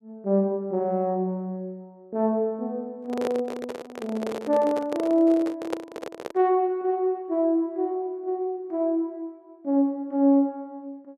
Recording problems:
handling noise; from 3 to 6.5 s; peak 0 dB vs average level

